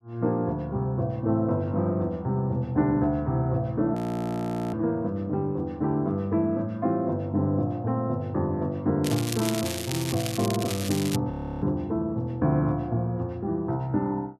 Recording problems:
frozen audio; at 4 s for 1 s and at 11 s
crackling; from 9 to 11 s; loose cable, SNR 7 dB

